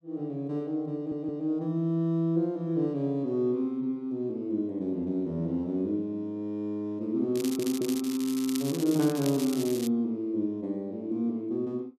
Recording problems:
stutter; at 1 s and at 7.5 s
crackling; from 7.5 to 10 s; loose cable, SNR 10 dB

